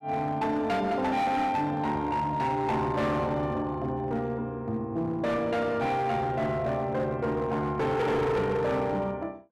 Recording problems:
distortion; hard clipping, signal-to-distortion ratio 10 dB

